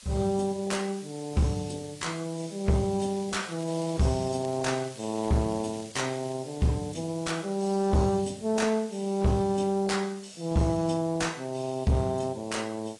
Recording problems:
lossy codec; AAC, log-spectral distance 6 dB, nothing above 10.1 kHz
distorted audio; soft clipping, signal-to-distortion ratio 11 dB
hiss; slope +3 dB per octave, SNR 19 dB
crackling; from 3 to 4.5 s and from 4.5 to 6.5 s; loose cable, SNR 21 dB

